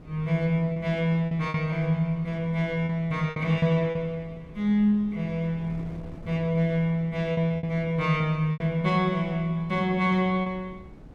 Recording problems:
wind on the microphone; below 290 Hz, SNR 20 dB
packet loss; 6% of the sound replaced, filled with repeated pitch periods

